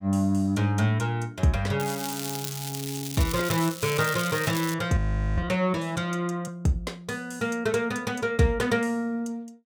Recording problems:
crackling; from 2 to 4.5 s; loose cable, SNR 8 dB
frozen audio; at 5 s

